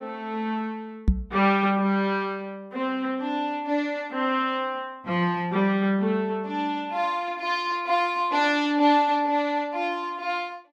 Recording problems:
microphone thump; at 1 s; peak +8 dB vs average level

